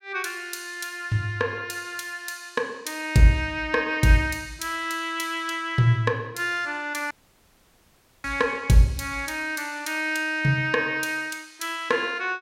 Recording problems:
audio cutting out; at 7 s for 1 s

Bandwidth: 16 kHz